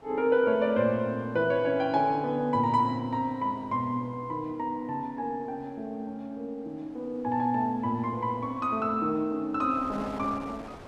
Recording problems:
wind on the microphone; below 1.1 kHz, SNR 21 dB

